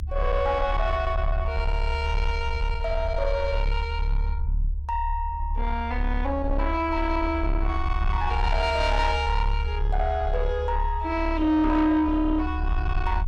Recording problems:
distortion; soft clipping, signal-to-distortion ratio 11 dB
rumble; below 72 Hz, strongest tone 34 Hz, SNR 3 dB

